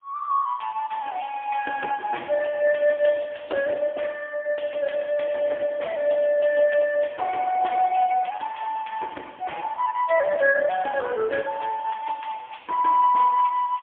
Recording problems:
telephone audio; 280 Hz to 2.7 kHz, AMR-NB, then MP3

